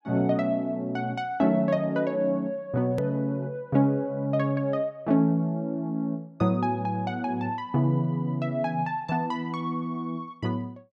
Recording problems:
hard cut with a click; at 3 s

